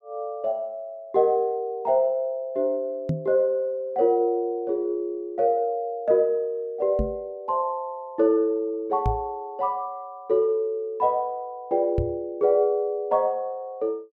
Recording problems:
knock on the microphone; 4 times, first at 3 s; peak +2 dB vs average level

